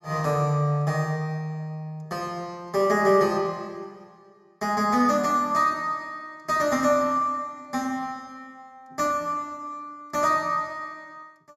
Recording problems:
none

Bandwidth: 16.5 kHz